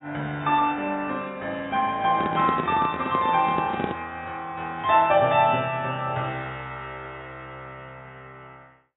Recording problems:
codec artefacts; AAC, log-spectral distance 2 dB, nothing above 3.6 kHz
microphone handling noise; from 2 to 4 s; peak 0 dB vs average level

